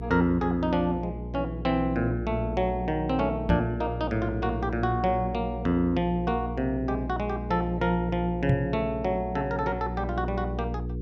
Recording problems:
hum; 60 Hz, harmonics up to 480 Hz, SNR 7 dB
microphone bump; at 3.5 s and at 8.5 s; peak +6 dB vs average level

